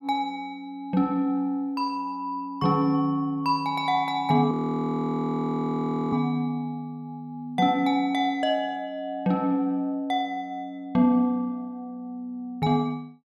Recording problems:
audio freezing; at 4.5 s for 1.5 s

